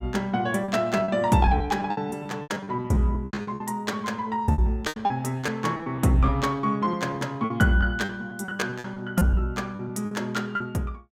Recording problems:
lost packets; 15% of the sound replaced, filled with repeated pitch periods

